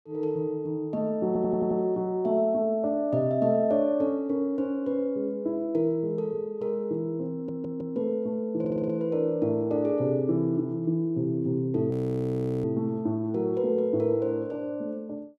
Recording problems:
stutter; at 1.5 s, at 7.5 s and at 8.5 s
audio freezing; at 12 s for 0.5 s

